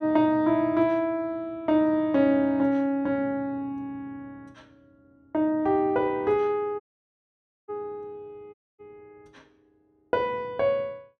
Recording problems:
dropout; at 7 s for 1 s and at 8.5 s

